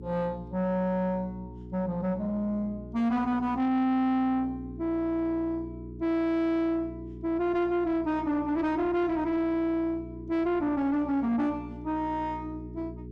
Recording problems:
distortion; soft clipping, signal-to-distortion ratio 11 dB
hum; 60 Hz, harmonics up to 720 Hz, SNR 15 dB

